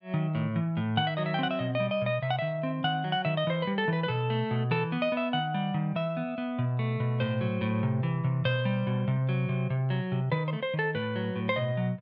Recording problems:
none

